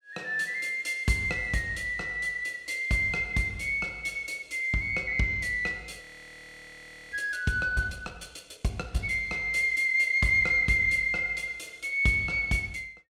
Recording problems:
frozen audio; at 6 s for 1 s

